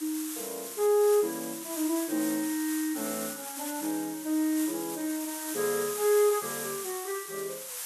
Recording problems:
background hiss; SNR 6 dB

